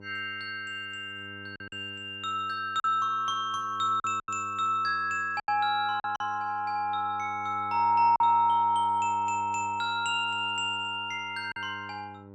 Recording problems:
electrical hum; 50 Hz, harmonics up to 1.1 kHz, SNR 21 dB
packet loss; 4% of the sound replaced, filled with silence

